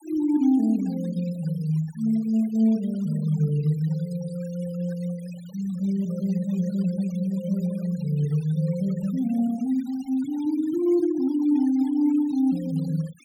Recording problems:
denoising artefacts; signal-to-artefact ratio 24 dB

